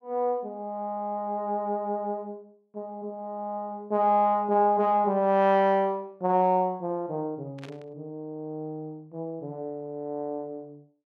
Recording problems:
burst of static; at 7.5 s; peak -13 dB vs average level

